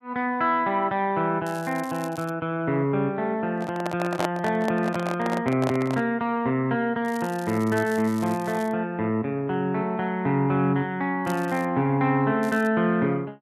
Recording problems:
crackle; 4 times, first at 1.5 s; loose cable, SNR 21 dB
handling noise; from 3.5 to 6 s; peak +2 dB vs average level

